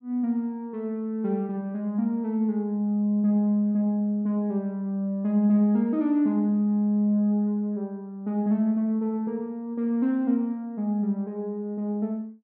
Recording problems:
treble missing; nothing above 5.5 kHz

